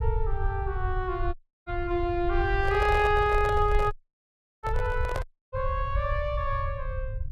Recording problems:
low-frequency rumble; below 74 Hz, SNR 5 dB
audio cutting out; at 1.5 s, at 4 s for 0.5 s and at 5 s
microphone handling noise; from 2.5 to 5.5 s; peak -1 dB vs average level

